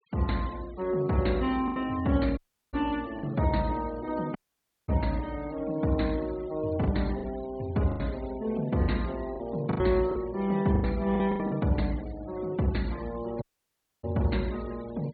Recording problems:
low-pass filter; nothing above 4.5 kHz
noise reduction artefacts; signal-to-artefact ratio 21 dB
lost packets; 5% of the sound replaced, filled with the last packet
dropout; at 2.5 s, at 4.5 s for 0.5 s and at 13 s for 0.5 s

